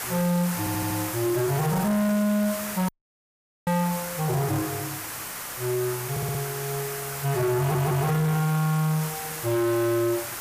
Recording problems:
distorted audio; hard clipping, uneven, signal-to-distortion ratio 7 dB
background hiss; SNR 7 dB
stutter; at 0.5 s, at 6 s and at 7.5 s
audio cutting out; at 3 s for 1 s

